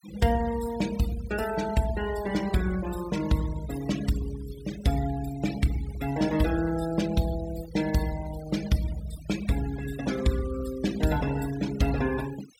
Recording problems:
noise reduction artefacts; signal-to-artefact ratio 14 dB

